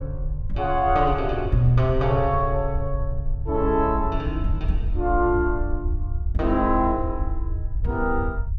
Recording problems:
rumble; below 72 Hz, SNR 6 dB

